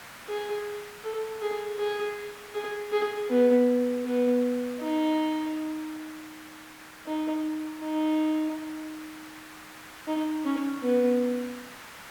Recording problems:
background hiss; SNR 16 dB

